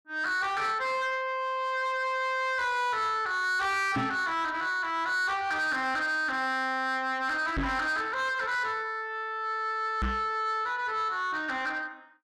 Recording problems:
distortion; soft clipping, signal-to-distortion ratio 11 dB
knock on the microphone; at 4 s, at 7.5 s and at 10 s; peak +3 dB vs average level

